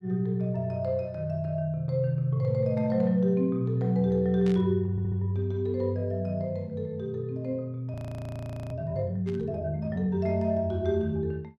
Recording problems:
static burst; at 4.5 s and at 9.5 s; peak -12 dB vs average level
stutter; at 5 s
frozen audio; at 8 s for 1 s

